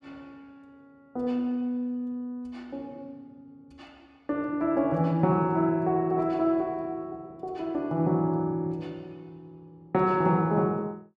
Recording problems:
none

